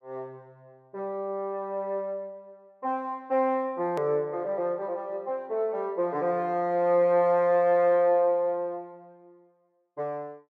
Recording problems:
click at an edit; at 4 s

